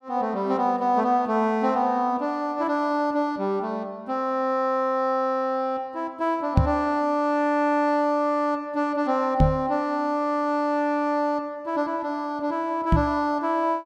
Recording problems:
knock on the microphone; at 6.5 s, at 9.5 s and at 13 s; peak +9 dB vs average level

